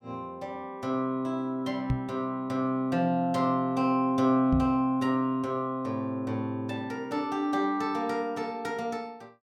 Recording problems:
knock on the microphone; at 2 s and at 4.5 s; peak +5 dB vs average level

